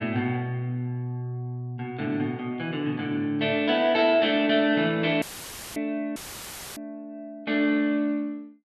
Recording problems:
audio cutting out; at 5 s for 0.5 s and at 6 s for 0.5 s; filled with static

